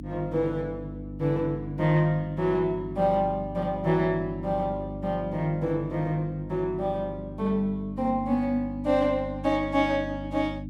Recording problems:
electrical hum; 50 Hz, harmonics up to 300 Hz, SNR 10 dB

